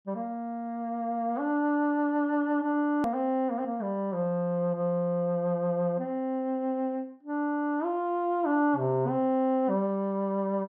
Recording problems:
click at an edit; at 3 s

